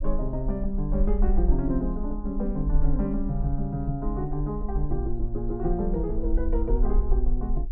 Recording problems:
low-frequency rumble; below 48 Hz, SNR 0 dB

